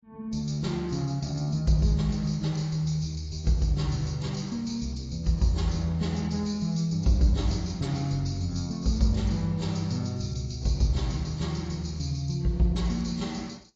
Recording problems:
codec artefacts; AAC, log-spectral distance 4 dB

